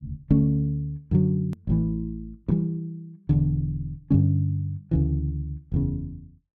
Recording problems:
hard cut with a click; at 1.5 s

